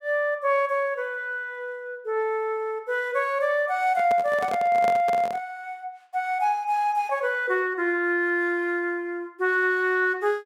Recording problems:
microphone handling noise; from 4 to 5.5 s; peak -4 dB vs average level

